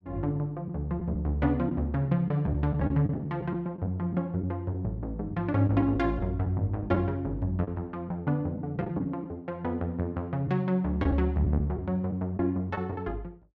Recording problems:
packet loss; 5% of the sound replaced, filled with the last packet

